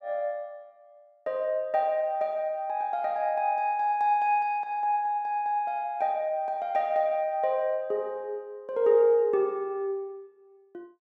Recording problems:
none

